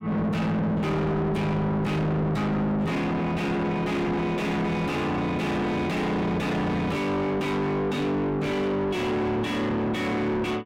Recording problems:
distorted audio; soft clipping, signal-to-distortion ratio 5 dB

